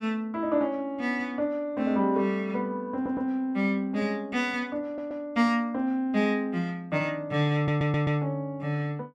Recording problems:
audio stuttering; at 3 s, at 5 s and at 7.5 s

